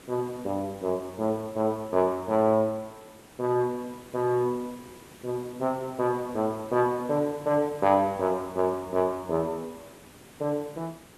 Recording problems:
hiss; slope -5 dB per octave, SNR 21 dB

